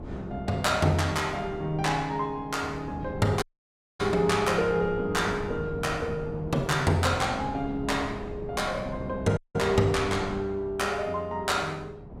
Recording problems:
wind on the microphone; below 360 Hz, SNR 13 dB
dropout; at 3.5 s for 0.5 s and at 9.5 s

